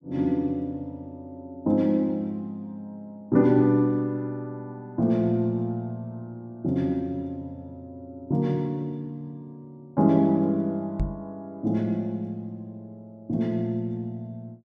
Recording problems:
microphone bump; at 11 s; peak +1 dB vs average level

